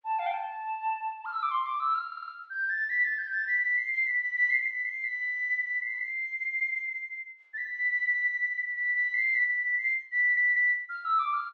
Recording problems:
audio stuttering; at 2 s and at 10 s

